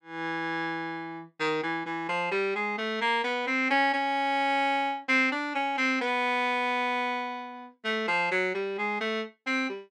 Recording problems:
none

